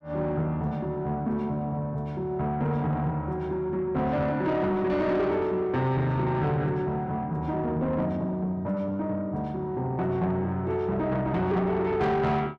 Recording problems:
distorted audio; soft clipping, signal-to-distortion ratio 10 dB

